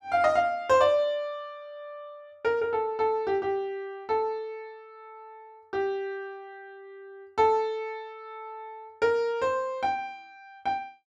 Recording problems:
none

